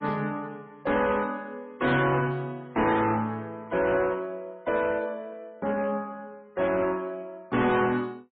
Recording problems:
lossy codec; MP3, log-spectral distance 2 dB
distorted audio; hard clipping, uneven, signal-to-distortion ratio 10 dB

